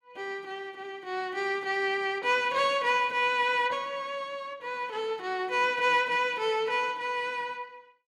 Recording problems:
none

